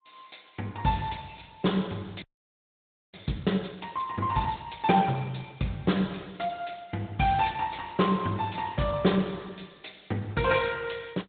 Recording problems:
treble cut off; nothing above 3.9 kHz
lossy codec; Opus, log-spectral distance 5 dB
audio freezing; at 2 s for 1 s

